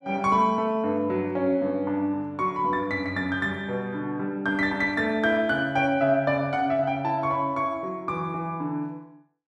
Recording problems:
none

